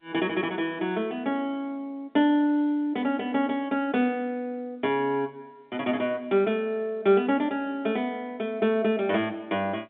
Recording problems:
phone line; 240 Hz to 3.7 kHz, G.711

